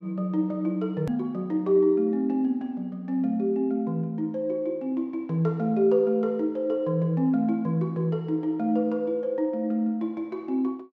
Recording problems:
click at an edit; at 1 s

